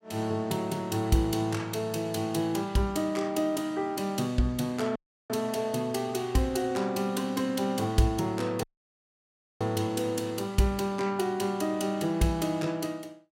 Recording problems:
audio cutting out; at 5 s and at 8.5 s for 1 s

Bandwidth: 16 kHz